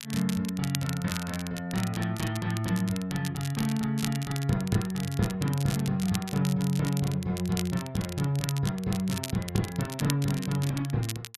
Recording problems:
crackling; vinyl, SNR 10 dB

